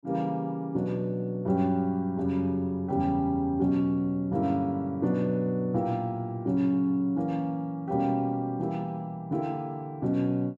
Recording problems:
none

